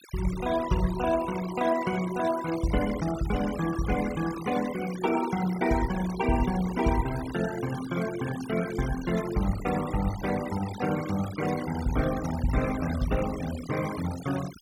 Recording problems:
noise reduction artefacts; signal-to-artefact ratio 13 dB

